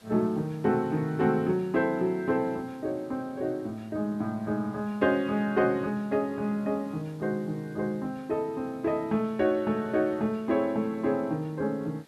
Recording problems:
background hiss; slope -3 dB per octave, SNR 29 dB

